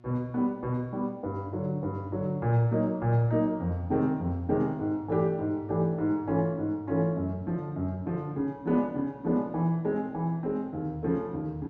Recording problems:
hum; 60 Hz, harmonics up to 1.1 kHz, SNR 25 dB

